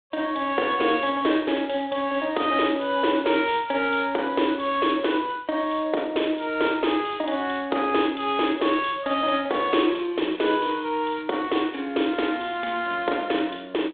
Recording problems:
phone line; 260 Hz to 3.6 kHz, G.726

